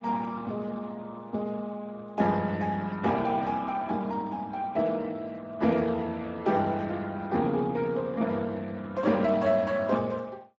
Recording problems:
codec artefacts; Speex, log-spectral distance 3 dB, nothing above 7.3 kHz

